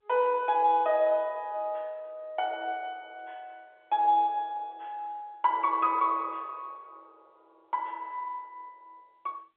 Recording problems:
telephone audio; 300 Hz to 3.8 kHz, G.711

